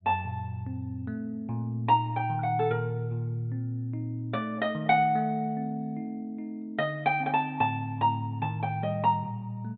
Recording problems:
treble missing; nothing above 4 kHz

